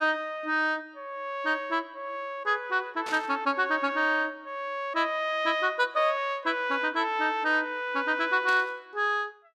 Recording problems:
burst of static; at 3 s and at 8.5 s; peak -7 dB vs average level

